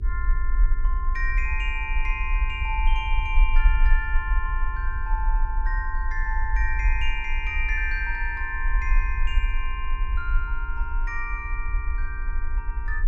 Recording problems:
hum; 60 Hz, harmonics up to 420 Hz, SNR 22 dB
rumble; below 46 Hz, SNR -3 dB

